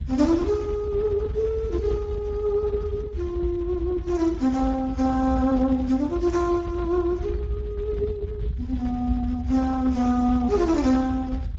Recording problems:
lossy compression; AAC, then Speex, log-spectral distance 2 dB, nothing above 16.5 kHz
rumble; below 100 Hz, SNR 8 dB

